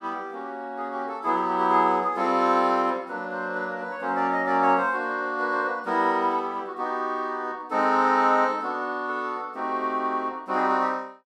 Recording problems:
none

